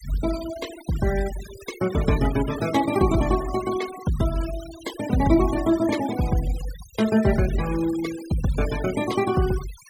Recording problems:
noise reduction artefacts; signal-to-artefact ratio 14 dB

